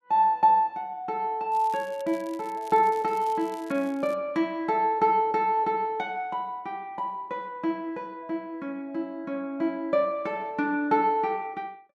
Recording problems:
crackling; from 1.5 to 4 s; loose cable, SNR 25 dB

